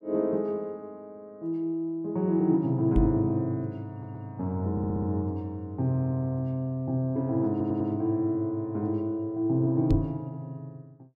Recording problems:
microphone bump; at 3 s and at 10 s; peak +4 dB vs average level
audio stuttering; at 4 s, at 4.5 s and at 7.5 s

